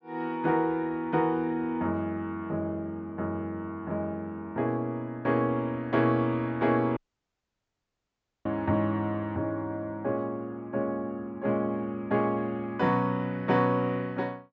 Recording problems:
low-pass filter; nothing above 8 kHz
dropout; at 7 s for 1.5 s

